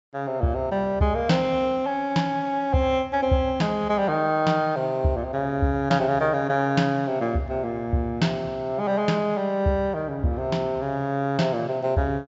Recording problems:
low-pass filter; nothing above 8 kHz

